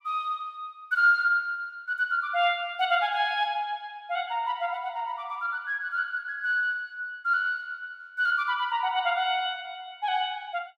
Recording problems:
none

